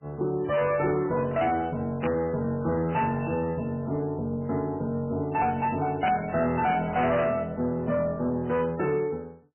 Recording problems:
lossy compression; MP3, log-spectral distance 3 dB, nothing above 2.7 kHz
distorted audio; soft clipping, signal-to-distortion ratio 11 dB
static burst; at 2 s and at 6 s; peak -1 dB vs average level

